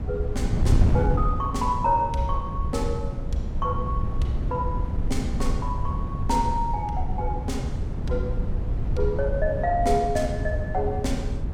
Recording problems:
wind noise; below 110 Hz, SNR 0 dB

